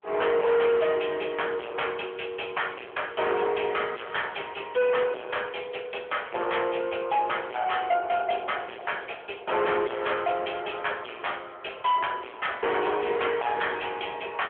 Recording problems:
phone line; 320 Hz to 3.3 kHz, AMR-NB
distortion; hard clipping, signal-to-distortion ratio 5 dB

